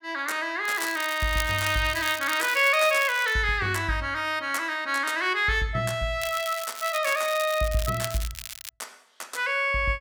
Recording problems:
crackle; from 0.5 to 3.5 s and from 6 to 8.5 s; loose cable, SNR 11 dB

